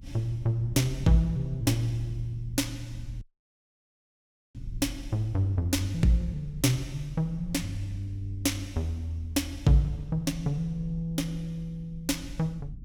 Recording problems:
low-frequency rumble; below 82 Hz, strongest tone 42 Hz, SNR 14 dB
dropout; at 3 s for 1.5 s

